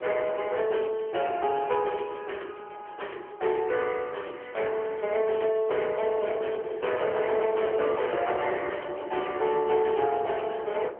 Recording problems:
phone line; 320 Hz to 3.1 kHz, AMR-NB
distorted audio; hard clipping, uneven, signal-to-distortion ratio 13 dB
wind noise; below 780 Hz, SNR 13 dB

